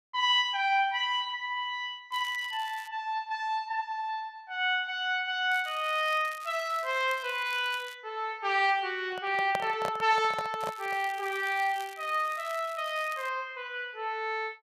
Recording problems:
crackle; at 2 s, from 5.5 to 8 s and from 11 to 13 s; loose cable, SNR 20 dB
handling noise; from 9 to 11 s; peak 0 dB vs average level

